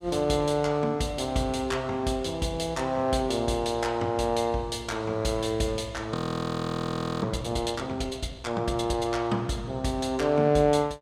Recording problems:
frozen audio; at 6 s for 1 s

